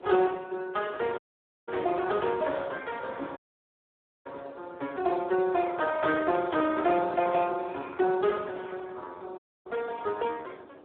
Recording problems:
telephone audio; 280 Hz to 3.7 kHz, Speex
wind noise; below 680 Hz, SNR 21 dB
dropout; at 1 s, at 3.5 s for 1 s and at 9.5 s

